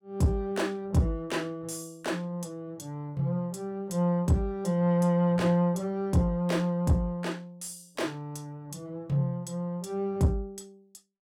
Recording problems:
distorted audio; soft clipping, signal-to-distortion ratio 11 dB

